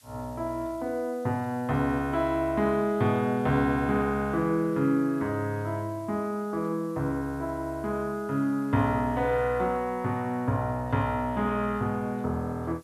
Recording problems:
hiss; slope +3 dB per octave, SNR 29 dB

